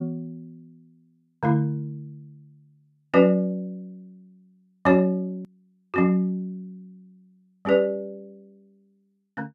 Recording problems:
click at an edit; at 5.5 s

